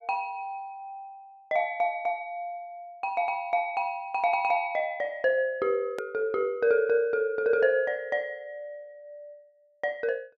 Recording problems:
hard cut with a click; at 6 s

